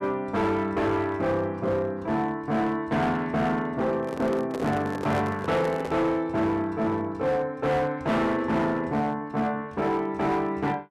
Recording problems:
distorted audio; hard clipping, signal-to-distortion ratio 11 dB
handling noise; from 4 to 6 s; peak -3 dB vs average level

